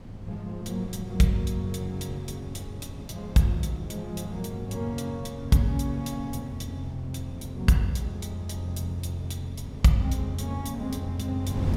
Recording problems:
wind noise; below 220 Hz, SNR 12 dB

